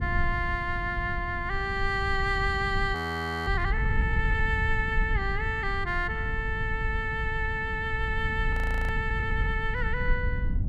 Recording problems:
low-frequency rumble; below 86 Hz, SNR 4 dB
audio freezing; at 3 s for 0.5 s and at 8.5 s

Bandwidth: 14.5 kHz